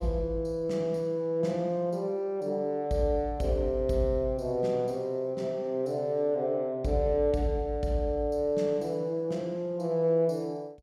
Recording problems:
none

